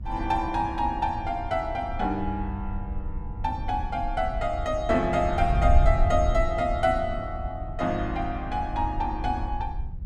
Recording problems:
wind noise; below 72 Hz, SNR 5 dB

